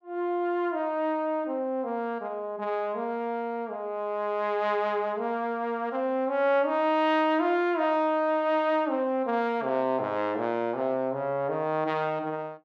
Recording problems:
none

